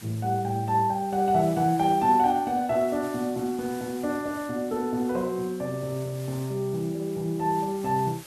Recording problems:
hiss; slope -1 dB per octave, SNR 20 dB

